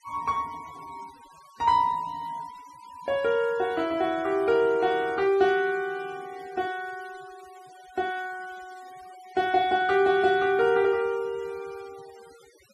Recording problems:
denoising artefacts; signal-to-artefact ratio 25 dB

